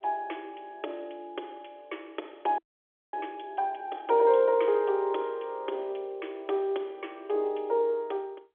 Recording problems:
phone line; 300 Hz to 3.4 kHz, G.711
frozen audio; at 2.5 s for 0.5 s

